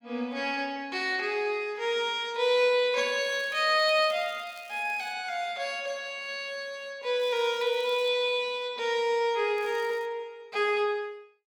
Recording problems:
crackle; from 3 to 5 s, at 7 s and at 9.5 s; loose cable, SNR 26 dB

